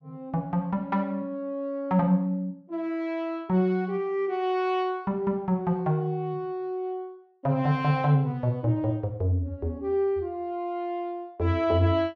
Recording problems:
none

